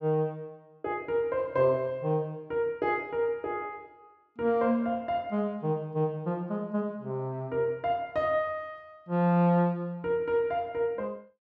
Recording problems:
none

